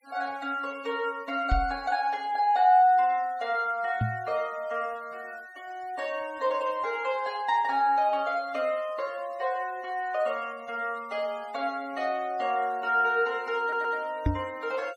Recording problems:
noise reduction artefacts; signal-to-artefact ratio 26 dB
microphone thump; at 1.5 s, at 4 s and at 14 s; peak +5 dB vs average level
stutter; at 14 s

